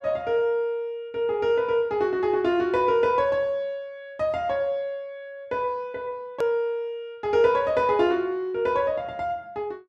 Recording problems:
click at an edit; at 6.5 s

